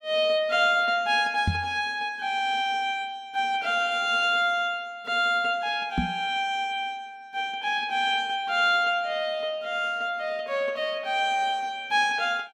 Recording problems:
microphone thump; at 1.5 s and at 6 s; peak +3 dB vs average level

